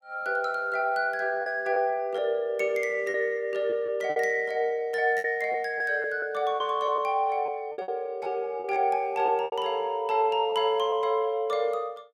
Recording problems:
packet loss; 7% of the sound replaced, filled with repeated pitch periods

